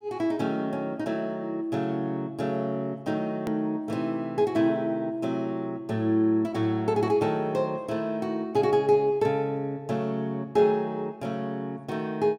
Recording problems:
hard cut with a click; at 3.5 s

